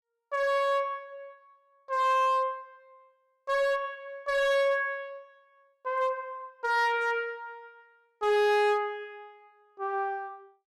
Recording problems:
distortion; hard clipping, signal-to-distortion ratio 11 dB

